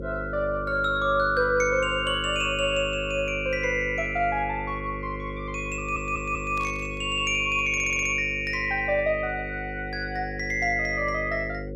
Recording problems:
hum; 50 Hz, harmonics up to 550 Hz, SNR 10 dB
stutter; at 6 s and at 7.5 s
burst of static; at 6.5 s; peak -14 dB vs average level

